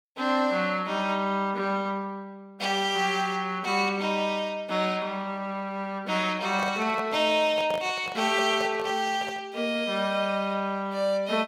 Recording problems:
handling noise; from 6.5 to 9.5 s; peak -4 dB vs average level

